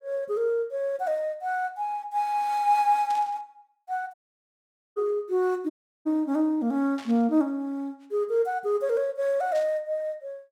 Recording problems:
static burst; at 3 s, at 7 s and at 9.5 s; peak -12 dB vs average level
audio cutting out; at 4 s for 1 s and at 5.5 s

